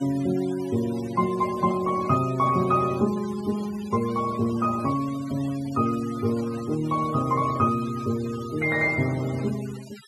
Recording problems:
noise reduction artefacts; signal-to-artefact ratio 18 dB

